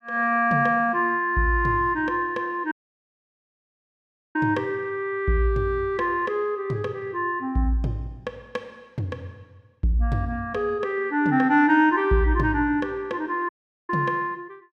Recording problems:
audio cutting out; at 2.5 s for 1.5 s and at 13 s

